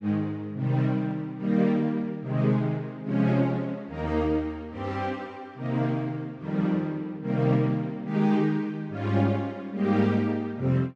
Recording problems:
none

